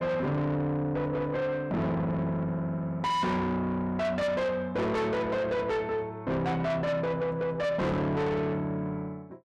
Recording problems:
distortion; soft clipping, signal-to-distortion ratio 7 dB

